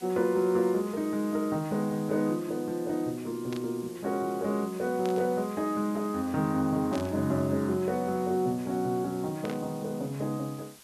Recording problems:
background hiss; slope 0 dB per octave, SNR 20 dB
static burst; 4 times, first at 3.5 s; peak -9 dB vs average level

